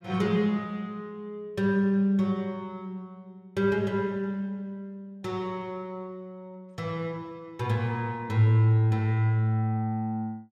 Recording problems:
none

